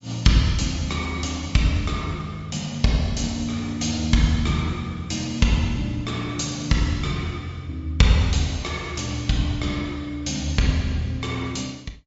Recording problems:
treble missing; nothing above 7.3 kHz
lossy codec; MP3, log-spectral distance 3 dB

